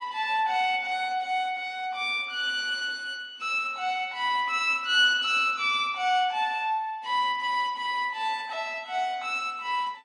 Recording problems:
lossy compression; AAC, log-spectral distance 2 dB

